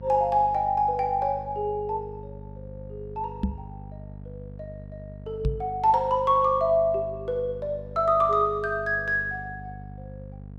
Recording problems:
hum; 50 Hz, harmonics up to 500 Hz, SNR 17 dB
microphone bump; at 3.5 s and at 5.5 s; peak +2 dB vs average level

